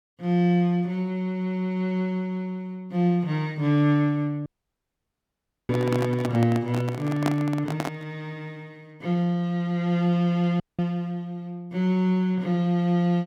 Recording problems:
audio cutting out; at 4.5 s for 1 s and at 11 s
microphone handling noise; from 5.5 to 8 s; peak +2 dB vs average level

